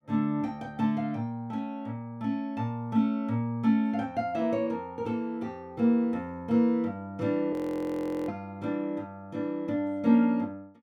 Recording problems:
audio freezing; at 7.5 s for 0.5 s

